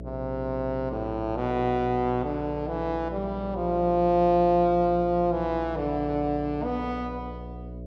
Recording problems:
hum; 60 Hz, harmonics up to 660 Hz, SNR 12 dB

